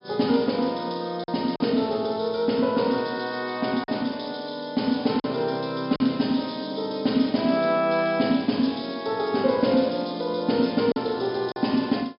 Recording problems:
treble missing; nothing above 5.5 kHz
packet loss; 2% of the sound replaced, filled with silence

